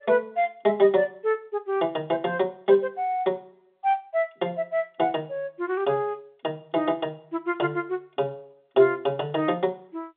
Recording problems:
phone line; 220 Hz to 3.7 kHz, G.711

